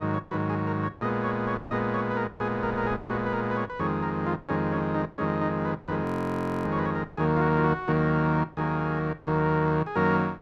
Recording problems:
wind noise; below 600 Hz, SNR 21 dB
frozen audio; at 6 s for 0.5 s

